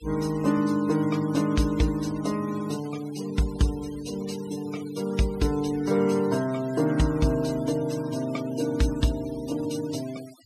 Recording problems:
denoising artefacts; signal-to-artefact ratio 18 dB

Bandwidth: 14.5 kHz